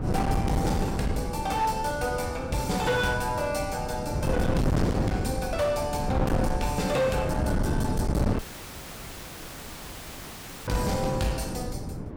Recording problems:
distorted audio; hard clipping, signal-to-distortion ratio 7 dB
wind noise; below 310 Hz, SNR 1 dB
dropout; at 8.5 s for 2.5 s

